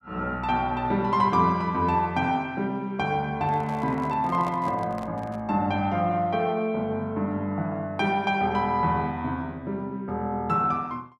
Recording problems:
microphone handling noise; from 3.5 to 5.5 s; peak -7 dB vs average level

